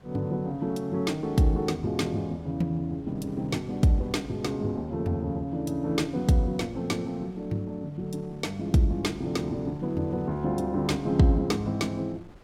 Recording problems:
wind on the microphone; below 540 Hz, SNR 24 dB

